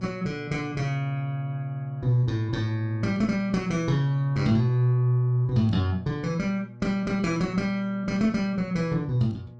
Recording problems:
hum; 60 Hz, harmonics up to 840 Hz, SNR 17 dB

